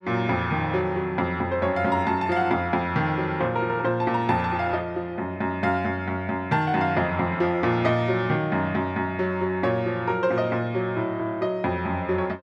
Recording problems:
none

